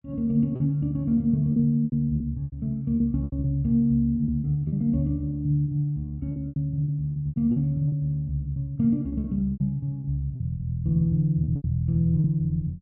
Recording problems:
lost packets; 11% of the sound replaced, filled with repeated pitch periods

